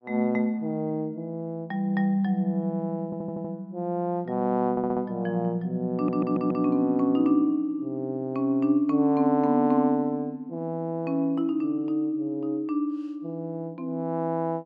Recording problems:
audio stuttering; at 3 s, at 4.5 s and at 6 s

